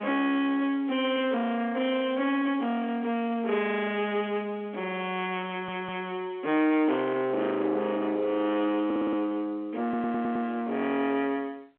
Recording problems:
telephone audio; 280 Hz to 3.3 kHz, G.711
distorted audio; soft clipping, signal-to-distortion ratio 10 dB
stutter; at 5.5 s, at 9 s and at 10 s

